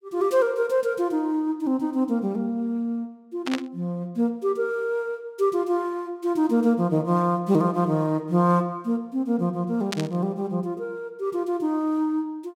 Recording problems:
burst of static; at 3.5 s and at 10 s; peak -1 dB vs average level

